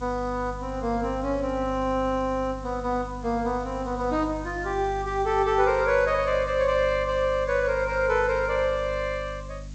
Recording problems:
lossy codec; G.722, log-spectral distance 5 dB
hum; 50 Hz, harmonics up to 300 Hz, SNR 14 dB
background hiss; slope 0 dB per octave, SNR 27 dB

